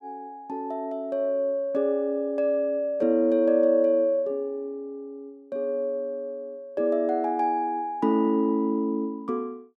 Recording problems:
none

